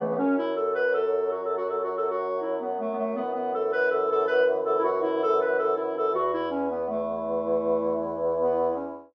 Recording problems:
none

